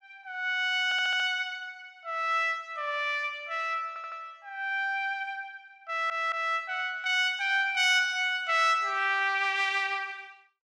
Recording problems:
audio stuttering; at 1 s, at 4 s and at 6 s

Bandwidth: 15 kHz